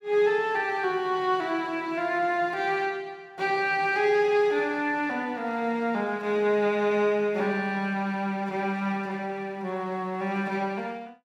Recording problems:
none

